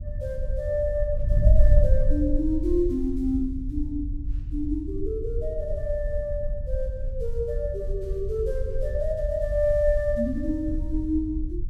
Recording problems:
wind noise; below 60 Hz, SNR 1 dB

